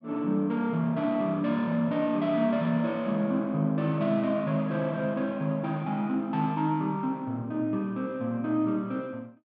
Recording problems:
none

